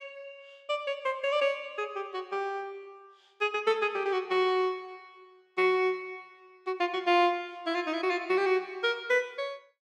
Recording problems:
none

